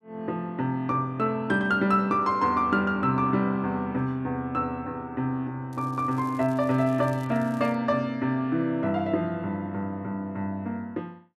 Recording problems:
crackling; from 5.5 to 8 s; loose cable, SNR 28 dB

